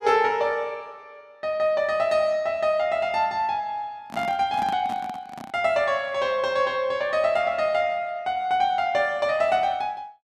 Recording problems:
microphone handling noise; from 4 to 5.5 s; peak -8 dB vs average level

